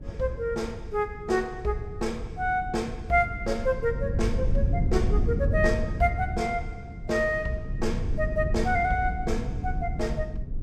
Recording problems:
low-frequency rumble; below 110 Hz, SNR 4 dB

